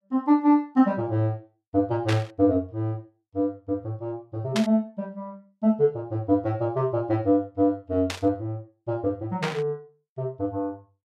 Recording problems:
static burst; 4 times, first at 2 s; peak +1 dB vs average level

